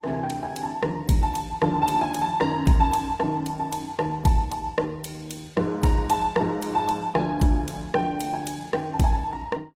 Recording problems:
lossy compression; Opus, log-spectral distance 3 dB, nothing above 16 kHz

